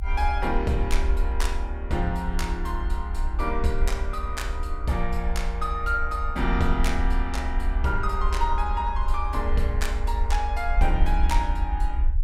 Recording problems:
low-frequency rumble; below 60 Hz, SNR 0 dB

